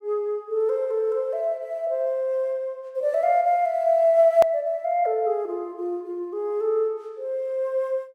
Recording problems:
click at an edit; at 4.5 s

